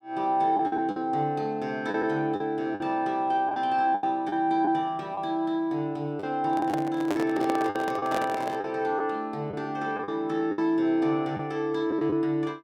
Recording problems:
lost packets; 7% of the sound replaced, filled with the last packet
handling noise; from 6.5 to 8.5 s; peak 0 dB vs average level

